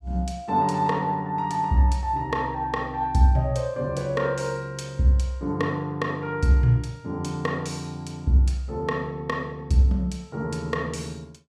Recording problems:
none

